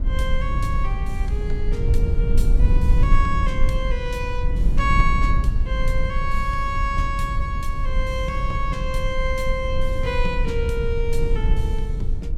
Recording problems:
low-frequency rumble; below 58 Hz, SNR -3 dB

